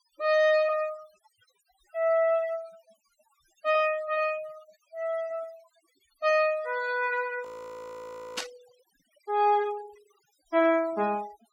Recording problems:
noise reduction artefacts; signal-to-artefact ratio 21 dB
frozen audio; at 7.5 s for 1 s
static burst; at 8.5 s; peak 0 dB vs average level

